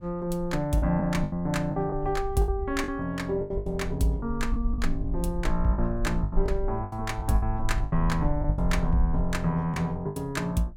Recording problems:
rumble; below 54 Hz, SNR 6 dB
lost packets; 11% of the sound replaced, filled with the last packet

